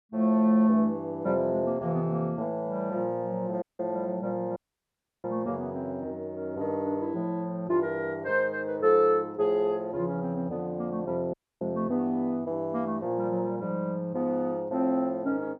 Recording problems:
dropout; at 3.5 s, at 4.5 s for 0.5 s and at 11 s

